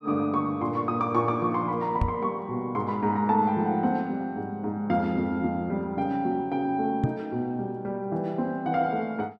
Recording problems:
microphone bump; at 2 s and at 7 s; peak +6 dB vs average level

